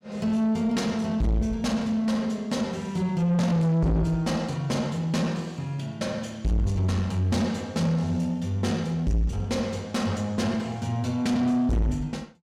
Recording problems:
distorted audio; soft clipping, signal-to-distortion ratio 6 dB

